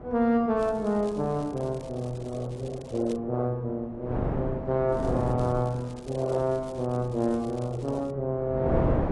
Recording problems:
lossy codec; AAC, log-spectral distance 2 dB
wind noise; below 510 Hz, SNR 7 dB
crackle; from 0.5 to 3 s and from 5 to 8 s; loose cable, SNR 25 dB

